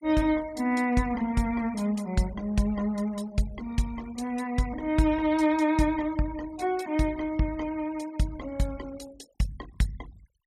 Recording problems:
denoising artefacts; signal-to-artefact ratio 22 dB

